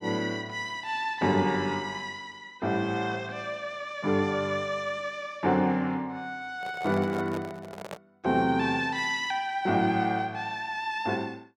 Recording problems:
handling noise; from 6.5 to 8 s; peak -6 dB vs average level

